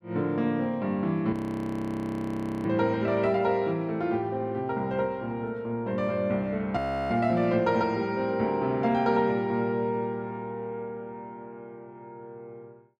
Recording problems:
frozen audio; at 1.5 s for 1.5 s and at 7 s

